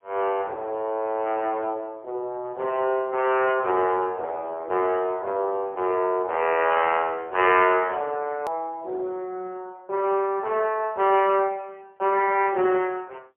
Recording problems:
telephone audio; 320 Hz to 3 kHz, AMR-NB, then MP3
click at an edit; at 8.5 s

